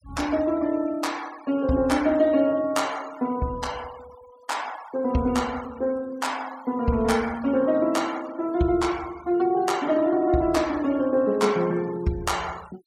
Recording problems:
denoising artefacts; signal-to-artefact ratio 21 dB

